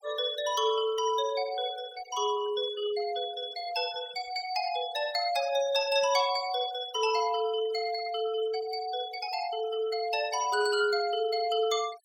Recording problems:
denoising artefacts; signal-to-artefact ratio 16 dB

